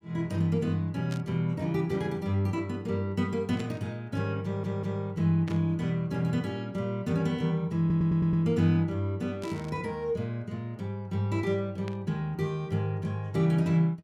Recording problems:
burst of static; 5 times, first at 1 s; peak -10 dB vs average level
stutter; at 4.5 s and at 8 s

